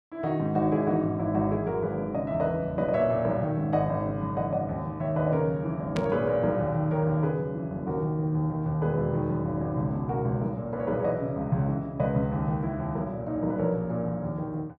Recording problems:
static burst; at 6 s; peak -5 dB vs average level

